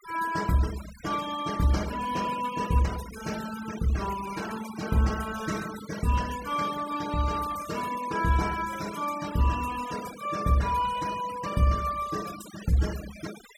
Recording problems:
noise reduction artefacts; signal-to-artefact ratio 13 dB

